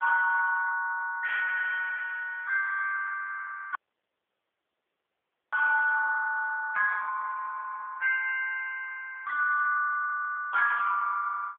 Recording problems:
phone line; 470 Hz to 2.3 kHz, AMR-NB
audio cutting out; at 4 s for 2 s

